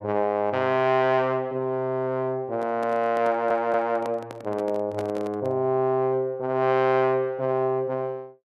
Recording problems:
handling noise; from 2.5 to 5.5 s; peak -6 dB vs average level
audio stuttering; at 3.5 s

